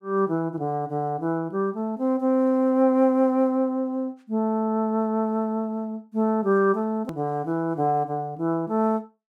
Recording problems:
edit click; at 7 s

